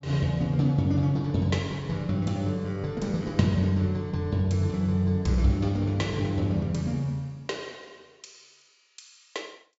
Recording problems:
low-pass filter; nothing above 8 kHz

